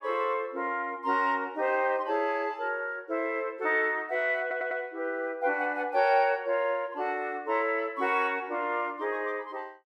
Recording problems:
audio stuttering; at 4.5 s

